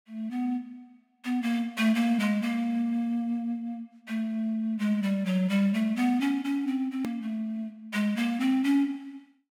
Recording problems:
edit click; at 7 s

